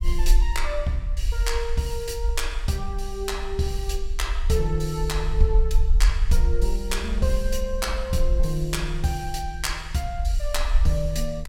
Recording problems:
low-frequency rumble; below 48 Hz, SNR -1 dB

